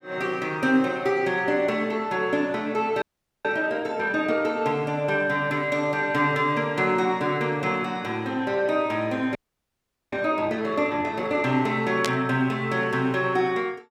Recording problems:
frozen audio; at 3 s and at 9.5 s for 1 s
burst of static; at 12 s; peak +2 dB vs average level

